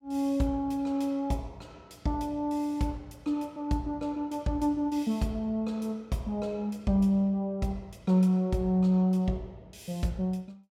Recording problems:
none

